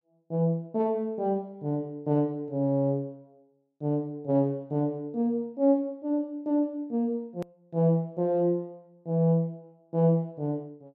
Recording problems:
click at an edit; at 7.5 s

